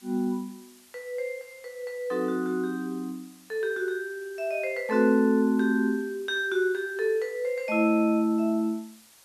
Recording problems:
background hiss; slope +1 dB per octave, SNR 26 dB

